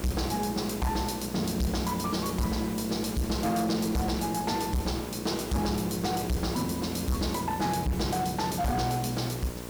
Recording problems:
distortion; hard clipping, signal-to-distortion ratio 6 dB
hum; 60 Hz, harmonics up to 1.6 kHz, SNR 11 dB
hiss; slope -2 dB per octave, SNR 13 dB

